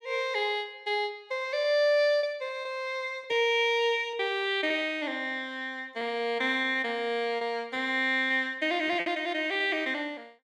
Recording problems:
packet loss; 5% of the sound replaced, filled with repeated pitch periods

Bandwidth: 15 kHz